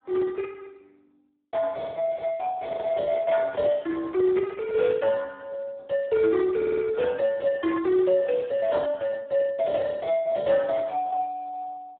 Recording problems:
telephone audio; 300 Hz to 2 kHz, Speex
microphone handling noise; from 2.5 to 5 s; peak -6 dB vs average level
stutter; at 6.5 s

